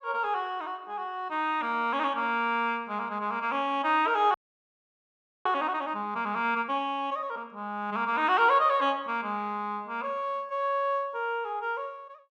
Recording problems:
frozen audio; at 4.5 s for 1 s

